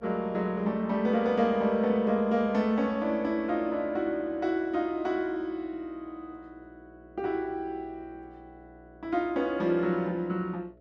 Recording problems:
electrical hum; 60 Hz, harmonics up to 660 Hz, SNR 27 dB

